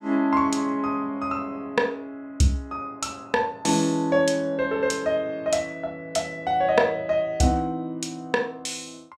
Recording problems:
none

